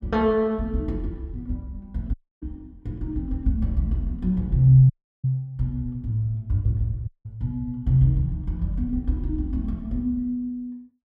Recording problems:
dropout; at 2 s, at 5 s and at 7 s

